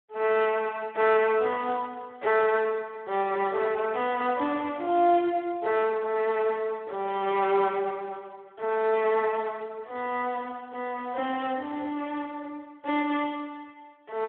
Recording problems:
phone line; 300 Hz to 3.7 kHz, Speex

